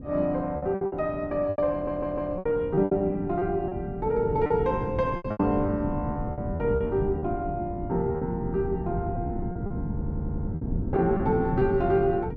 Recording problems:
wind on the microphone; below 220 Hz, SNR 6 dB
packet loss; 11% of the sound replaced, filled with repeated pitch periods
audio stuttering; at 1.5 s and at 10 s

